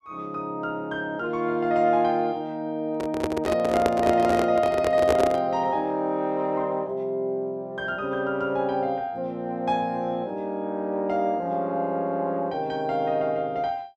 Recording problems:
microphone handling noise; from 3 to 5.5 s; peak +5 dB vs average level

